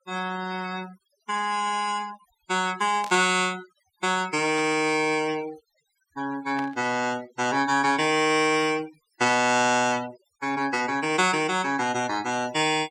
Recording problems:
denoising artefacts; signal-to-artefact ratio 18 dB
burst of static; at 3 s, at 4.5 s and at 6.5 s; peak -10 dB vs average level

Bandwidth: 17 kHz